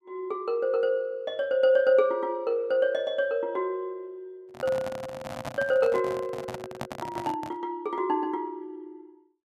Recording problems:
microphone handling noise; from 4.5 to 7.5 s; peak -3 dB vs average level

